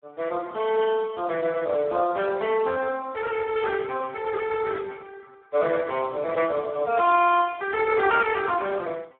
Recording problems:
telephone audio; 260 Hz to 2.8 kHz, Speex

